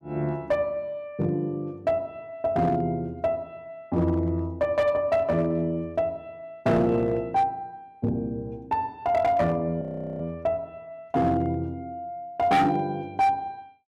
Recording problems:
distorted audio; hard clipping, uneven, signal-to-distortion ratio 12 dB
frozen audio; at 10 s

